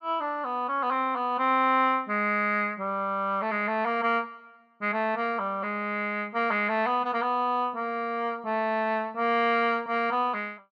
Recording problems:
none

